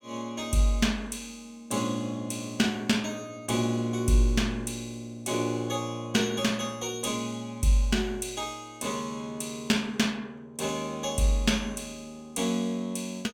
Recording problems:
none

